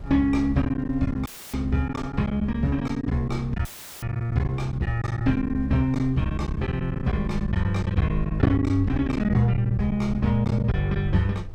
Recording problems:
low-frequency rumble; below 76 Hz, SNR 14 dB
wind on the microphone; below 580 Hz, SNR 26 dB
lost packets; 11% of the sound replaced, filled with silence
audio cutting out; at 1.5 s and at 3.5 s; filled with static

